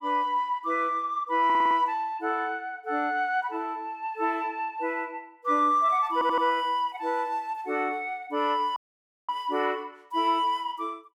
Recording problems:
audio stuttering; at 1.5 s and at 6 s
audio cutting out; at 9 s for 0.5 s

